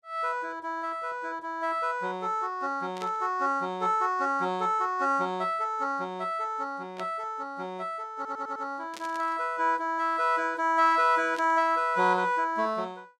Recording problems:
static burst; 4 times, first at 3 s; peak -10 dB vs average level
stutter; at 8 s

